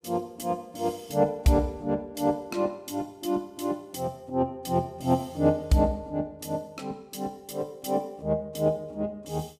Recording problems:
none

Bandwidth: 15.5 kHz